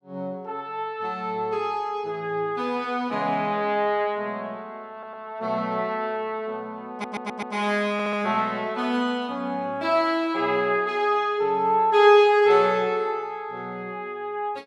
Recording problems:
audio stuttering; at 5 s, at 7 s and at 8 s

